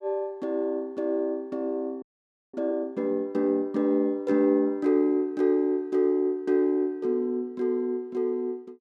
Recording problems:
audio freezing; at 2 s for 0.5 s

